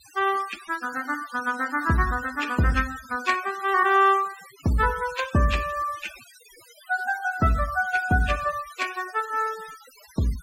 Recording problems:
noise reduction artefacts; signal-to-artefact ratio 17 dB

